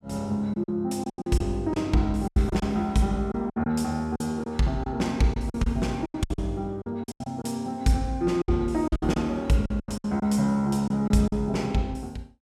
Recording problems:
lost packets; 12% of the sound replaced, filled with silence

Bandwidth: 16 kHz